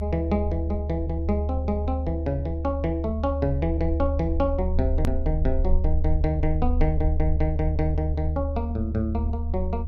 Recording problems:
low-frequency rumble; below 76 Hz, SNR 0 dB
hard cut with a click; at 5 s

